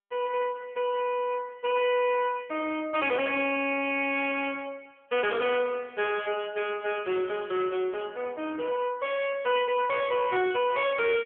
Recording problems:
phone line; 240 Hz to 3.3 kHz, AMR-NB
distortion; soft clipping, signal-to-distortion ratio 10 dB

